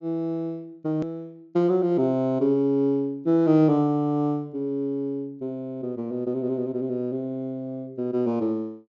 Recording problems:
low-pass filter; nothing above 7.2 kHz
edit click; at 1 s

